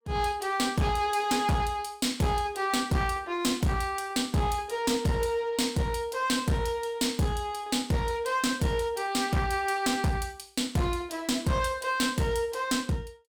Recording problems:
distortion; hard clipping, uneven, signal-to-distortion ratio 10 dB

